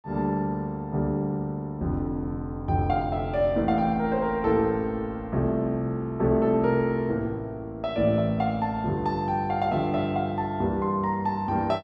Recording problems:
none

